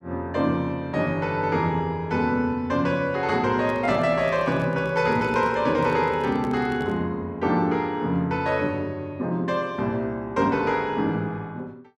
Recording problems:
microphone handling noise; from 3.5 to 7 s; peak -7 dB vs average level

